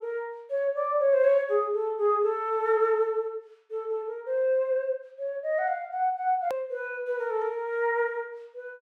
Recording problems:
click at an edit; at 6.5 s

